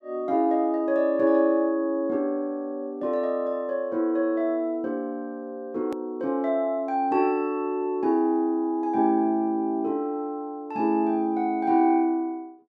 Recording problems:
edit click; at 6 s

